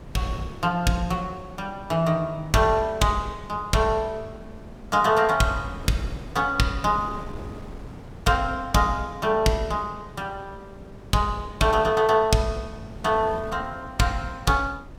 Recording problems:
wind on the microphone; below 360 Hz, SNR 18 dB

